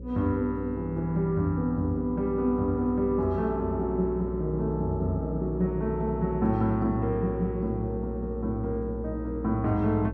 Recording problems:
hum; 60 Hz, harmonics up to 540 Hz, SNR 9 dB

